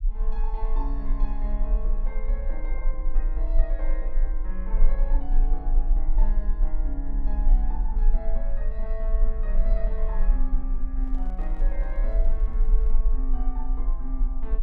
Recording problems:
rumble; below 36 Hz, strongest tone 26 Hz, SNR -12 dB
microphone handling noise; from 11 to 13 s; peak -9 dB vs average level

